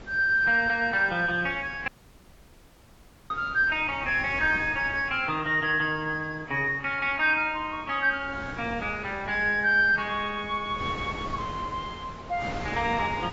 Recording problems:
codec artefacts; AAC, log-spectral distance 2 dB
wind noise; below 1.2 kHz, SNR 16 dB
audio cutting out; at 2 s for 1.5 s

